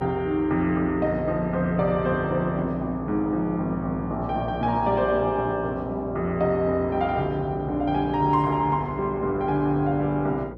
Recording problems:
hum; 60 Hz, harmonics up to 540 Hz, SNR 13 dB

